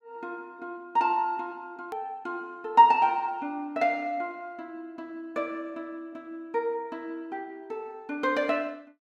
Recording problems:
hard cut with a click; at 2 s

